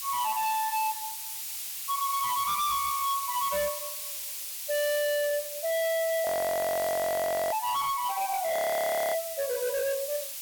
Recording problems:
distortion; hard clipping, signal-to-distortion ratio 8 dB
background hiss; slope +5 dB per octave, SNR 5 dB
frozen audio; at 6.5 s for 1.5 s and at 8.5 s for 0.5 s

